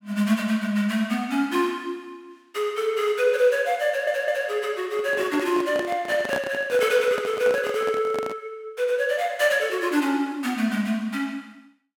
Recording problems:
stutter; at 4 s
handling noise; from 5 to 8.5 s; peak -3 dB vs average level

